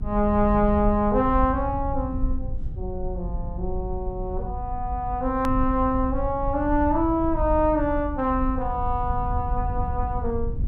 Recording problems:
low-frequency rumble; below 74 Hz, SNR 6 dB
click at an edit; at 5.5 s

